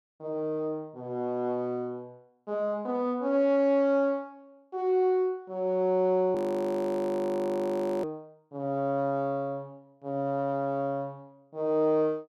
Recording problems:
audio freezing; at 6.5 s for 1.5 s

